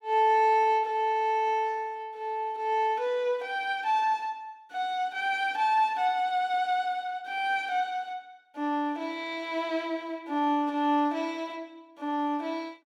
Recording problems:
none

